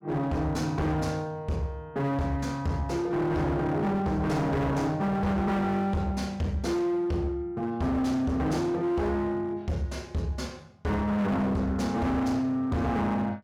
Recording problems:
distorted audio; hard clipping, uneven, signal-to-distortion ratio 7 dB

